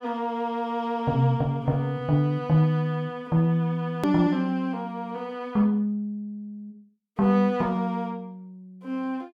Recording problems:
hard cut with a click; at 4 s

